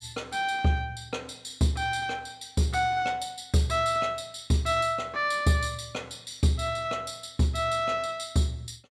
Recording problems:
none

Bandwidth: 14.5 kHz